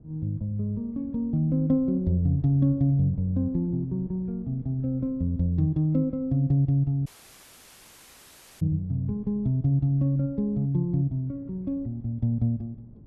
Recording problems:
wind on the microphone; below 220 Hz, SNR 22 dB
audio cutting out; at 7 s for 1.5 s

